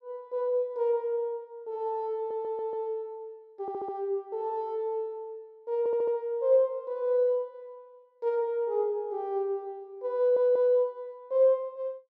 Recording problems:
stutter; 4 times, first at 2 s

